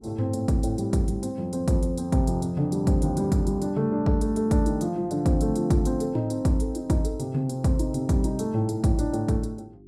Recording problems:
hum; 50 Hz, harmonics up to 400 Hz, SNR 26 dB

